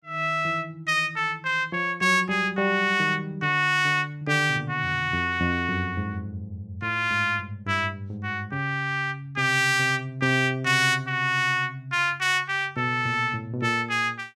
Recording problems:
none

